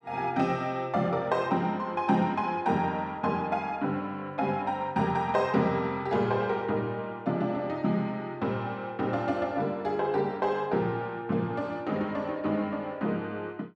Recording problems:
none

